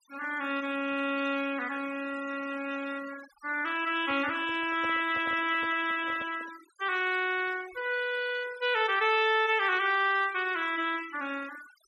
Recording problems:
noise reduction artefacts; signal-to-artefact ratio 18 dB
microphone handling noise; from 4 to 6.5 s; peak -10 dB vs average level

